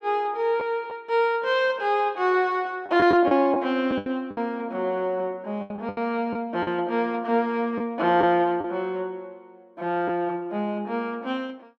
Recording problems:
lost packets; 5% of the sound replaced, filled with the last packet

